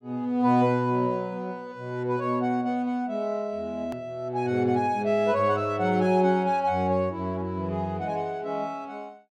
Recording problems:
click at an edit; at 4 s

